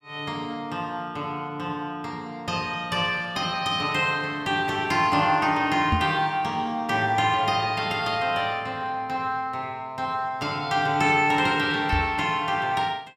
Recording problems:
microphone thump; at 6 s and at 12 s; peak +3 dB vs average level

